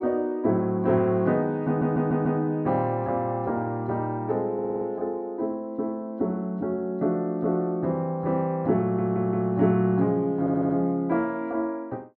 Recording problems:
stutter; 4 times, first at 1.5 s

